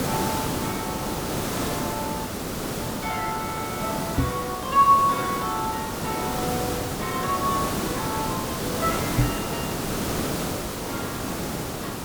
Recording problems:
background hiss; slope -5 dB per octave, SNR 1 dB
dropout; at 2.5 s for 0.5 s and at 10 s for 1 s
stutter; at 3.5 s
microphone bump; at 4 s and at 9 s; peak +9 dB vs average level

